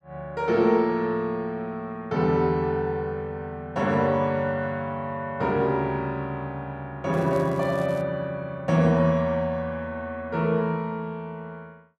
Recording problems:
crackling; at 7 s; loose cable, SNR 26 dB

